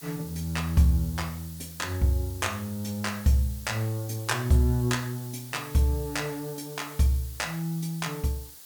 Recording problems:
background hiss; SNR 15 dB

